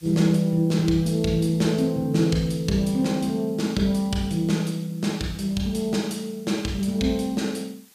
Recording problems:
hiss; slope +2 dB per octave, SNR 28 dB

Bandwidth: 15 kHz